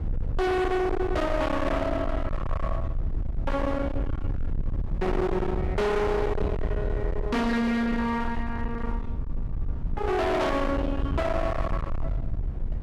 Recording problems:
distortion; hard clipping, signal-to-distortion ratio 6 dB
rumble; below 280 Hz, SNR 4 dB
knock on the microphone; at 6.5 s; peak -1 dB vs average level

